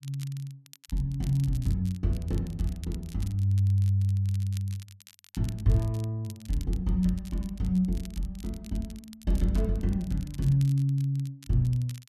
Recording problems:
crackle; vinyl, SNR 23 dB

